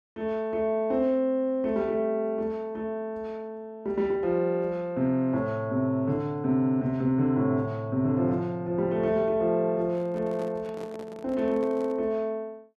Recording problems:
microphone handling noise; from 10 to 12 s; peak -11 dB vs average level

